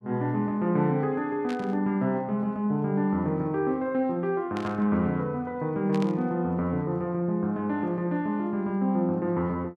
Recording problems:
burst of static; at 1.5 s, at 4.5 s and at 6 s; peak -9 dB vs average level

